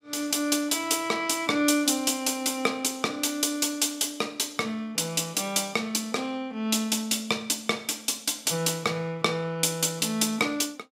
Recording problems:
none

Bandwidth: 15.5 kHz